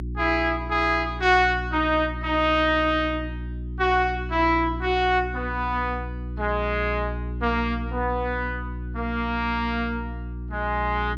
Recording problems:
hum; 60 Hz, harmonics up to 360 Hz, SNR 9 dB

